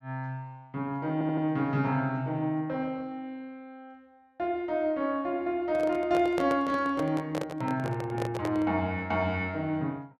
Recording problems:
stutter; at 1 s
handling noise; from 5.5 to 9 s; peak 0 dB vs average level

